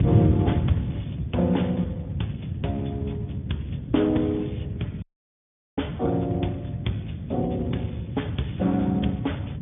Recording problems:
low-pass filter; nothing above 3.5 kHz
lossy compression; Speex, log-spectral distance 3 dB
wind noise; below 180 Hz, SNR 2 dB
dropout; at 5 s for 1 s

